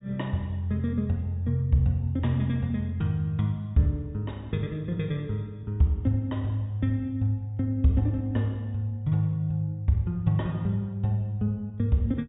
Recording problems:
low-pass filter; nothing above 4 kHz

